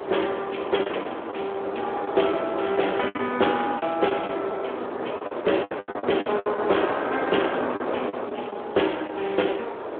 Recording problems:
phone line; 260 Hz to 3.4 kHz, Speex
background hiss; SNR 27 dB
wind on the microphone; below 940 Hz, SNR 5 dB
packet loss; 10% of the sound replaced, filled with the last packet

